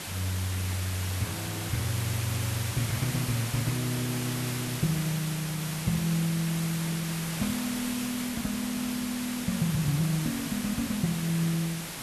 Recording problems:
background hiss; slope -1 dB per octave, SNR 4 dB

